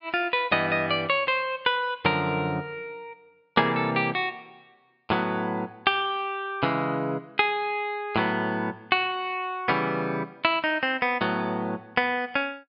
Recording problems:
low-pass filter; nothing above 5.5 kHz

